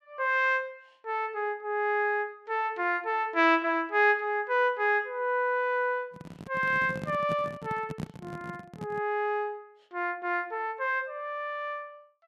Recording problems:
microphone handling noise; from 6 to 9 s; peak -3 dB vs average level

